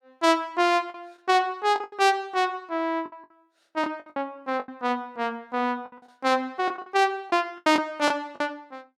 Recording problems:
packet loss; 10% of the sound replaced, filled with the last packet

